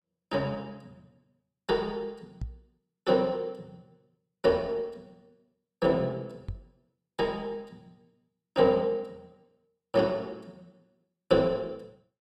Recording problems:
microphone bump; at 2.5 s and at 6.5 s; peak -4 dB vs average level

